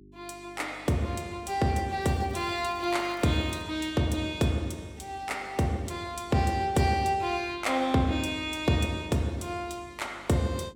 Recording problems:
electrical hum; 50 Hz, harmonics up to 400 Hz, SNR 24 dB
crackling; from 2 to 3.5 s; loose cable, SNR 28 dB

